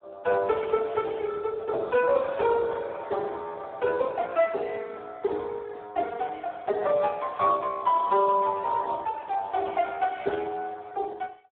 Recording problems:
phone line; 340 Hz to 3.8 kHz, Speex

